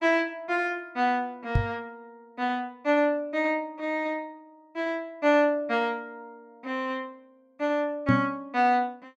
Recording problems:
microphone bump; at 1.5 s and at 8 s; peak +7 dB vs average level

